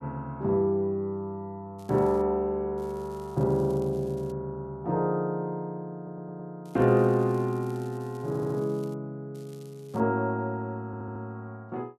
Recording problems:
crackling; 4 times, first at 2 s; loose cable, SNR 28 dB
audio stuttering; at 6 s, at 8.5 s and at 11 s

